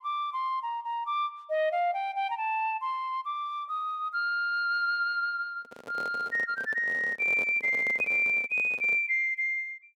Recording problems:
handling noise; from 5.5 to 9 s; peak -8 dB vs average level

